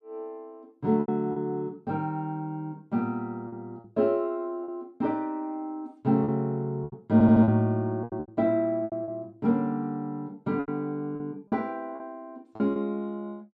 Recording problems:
lost packets; 8% of the sound replaced, filled with repeated pitch periods
audio stuttering; at 7 s

